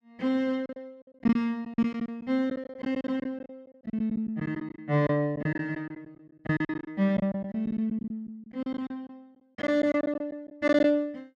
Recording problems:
lost packets; 14% of the sound replaced, filled with silence

